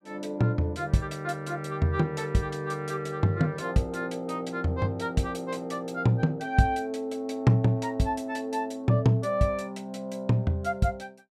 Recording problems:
none

